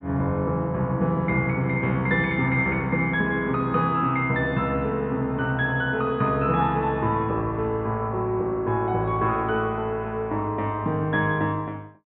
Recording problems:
low-pass filter; nothing above 4 kHz

